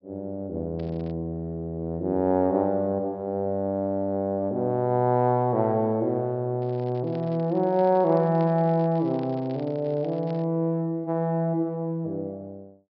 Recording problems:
low-pass filter; nothing above 5.5 kHz
crackling; at 1 s and from 6.5 to 10 s; loose cable, SNR 29 dB

